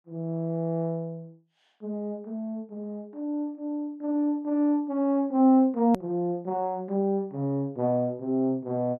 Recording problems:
hard cut with a click; at 6 s

